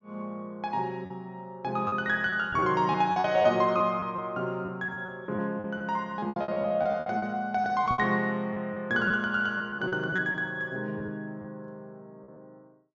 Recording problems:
low-pass filter; nothing above 7.2 kHz
packet loss; 10% of the sound replaced, filled with repeated pitch periods
knock on the microphone; at 2.5 s and at 8 s; peak -5 dB vs average level

